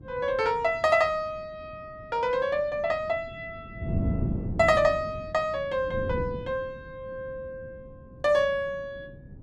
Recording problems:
wind noise; below 220 Hz, SNR 8 dB

